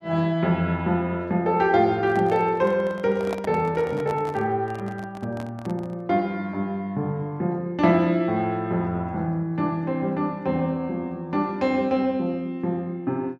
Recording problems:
microphone handling noise; from 2 to 6 s; peak -4 dB vs average level

